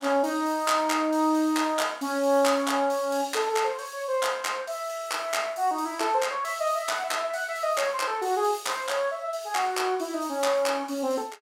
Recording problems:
none

